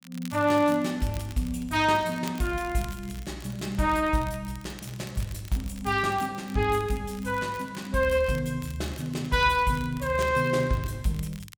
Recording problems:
crackling; vinyl, SNR 21 dB

